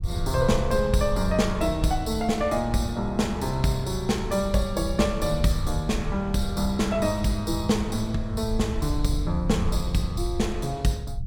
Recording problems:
rumble; below 78 Hz, SNR 7 dB

